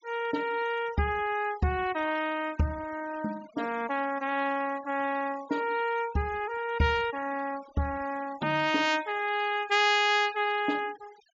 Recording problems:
low-pass filter; nothing above 7.4 kHz
denoising artefacts; signal-to-artefact ratio 20 dB

